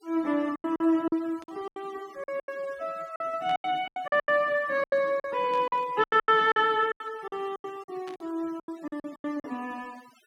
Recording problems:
denoising artefacts; signal-to-artefact ratio 24 dB
packet loss; 16% of the sound replaced, filled with silence
static burst; 4 times, first at 1.5 s; peak -12 dB vs average level

